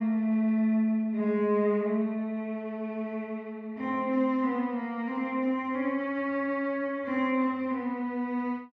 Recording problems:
none

